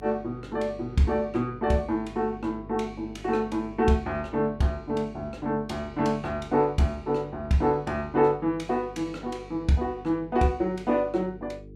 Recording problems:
electrical hum; 50 Hz, harmonics up to 450 Hz, SNR 18 dB

